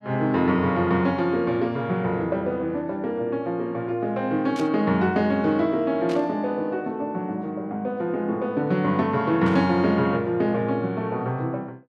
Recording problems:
burst of static; at 4.5 s, at 6 s and at 9.5 s; peak -10 dB vs average level

